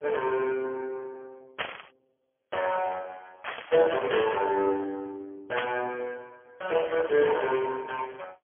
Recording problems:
phone line; 300 Hz to 3.4 kHz, AMR-NB, then MP3
burst of static; at 1.5 s, at 3.5 s and at 5.5 s; peak +2 dB vs average level

